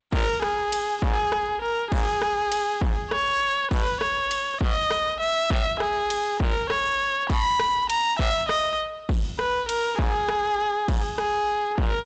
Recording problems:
lossy codec; G.722, log-spectral distance 2 dB, nothing above 7.6 kHz
distortion; hard clipping, signal-to-distortion ratio 6 dB

